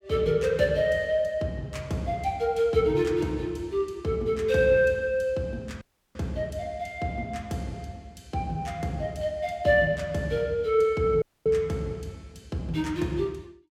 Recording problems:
dropout; at 6 s and at 11 s

